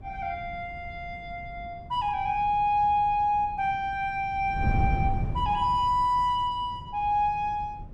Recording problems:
wind noise; below 150 Hz, SNR 10 dB

